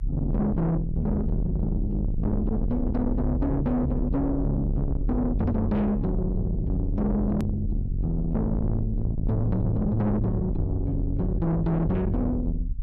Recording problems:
distorted audio; soft clipping, signal-to-distortion ratio 7 dB
low-frequency rumble; below 130 Hz, strongest tone 38 Hz, SNR 4 dB
edit click; at 7.5 s

